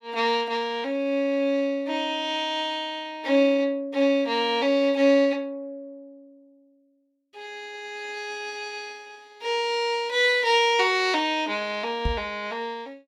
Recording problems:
microphone bump; at 12 s; peak 0 dB vs average level

